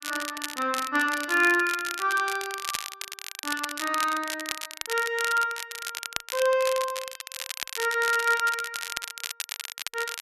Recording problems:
crackle; vinyl, SNR 8 dB

